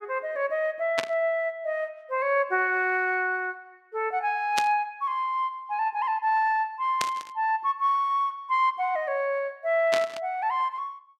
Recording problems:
static burst; 4 times, first at 1 s; peak +3 dB vs average level

